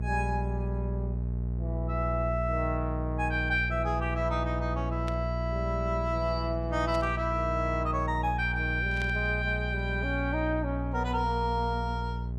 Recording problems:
hum; 60 Hz, harmonics up to 420 Hz, SNR 3 dB
static burst; at 5 s, at 7 s and at 9 s; peak -8 dB vs average level

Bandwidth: 14 kHz